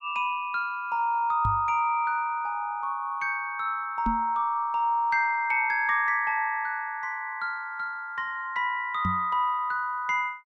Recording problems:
knock on the microphone; at 1.5 s, at 4 s and at 9 s; peak 0 dB vs average level

